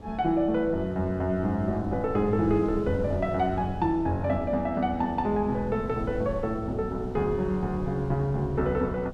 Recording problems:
wind noise; below 230 Hz, SNR 12 dB

